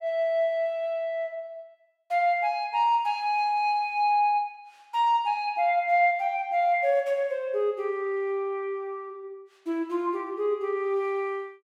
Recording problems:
none

